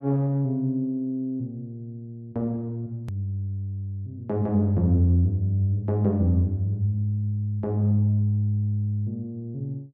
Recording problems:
click at an edit; at 3 s

